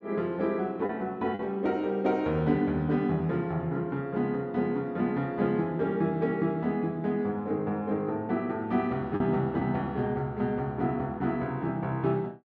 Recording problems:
packet loss; 1.1% of the sound replaced, filled with the last packet

